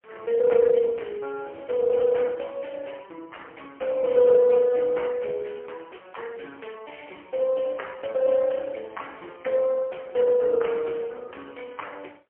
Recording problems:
telephone audio; 300 Hz to 3 kHz, AMR-NB, then MP3

